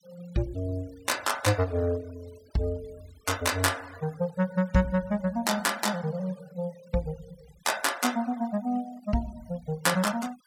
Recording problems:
denoising artefacts; signal-to-artefact ratio 21 dB

